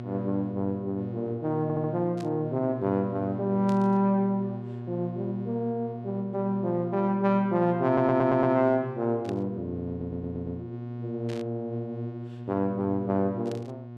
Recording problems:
mains hum; 60 Hz, harmonics up to 1.1 kHz, SNR 10 dB
stutter; at 1.5 s, at 8 s and at 10 s
burst of static; 5 times, first at 2 s; peak -13 dB vs average level

